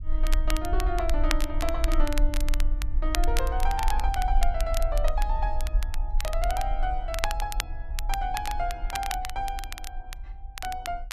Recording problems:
low-frequency rumble; below 42 Hz, strongest tone 26 Hz, SNR -1 dB
crackle; vinyl, SNR 6 dB

